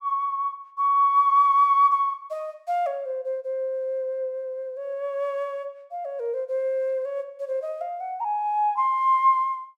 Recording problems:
none

